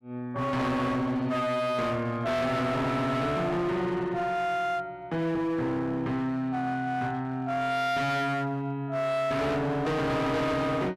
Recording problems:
distorted audio; hard clipping, signal-to-distortion ratio 7 dB

